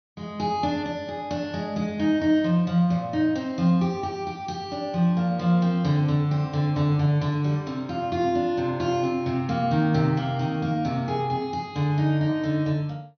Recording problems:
low-pass filter; nothing above 6.2 kHz

